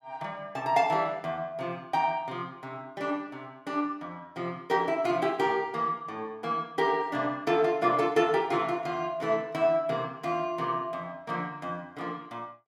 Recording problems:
none

